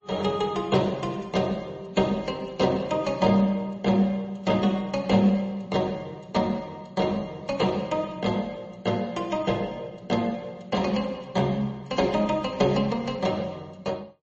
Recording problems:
codec artefacts; MP3, then MP3, log-spectral distance 2 dB, nothing above 7.1 kHz

